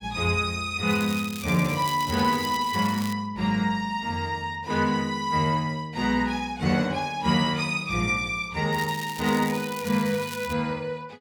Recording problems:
crackling; from 1 to 3 s and from 8.5 to 11 s; loose cable, SNR 14 dB

